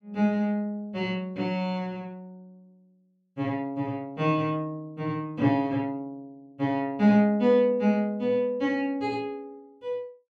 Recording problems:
none

